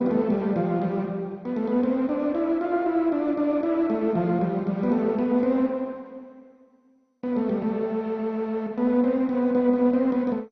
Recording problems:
lossy codec; MP2, log-spectral distance 2 dB, nothing above 6 kHz

